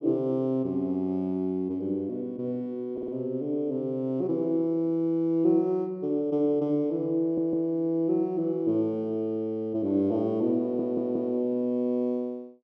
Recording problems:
stutter; at 3 s, at 7 s and at 11 s

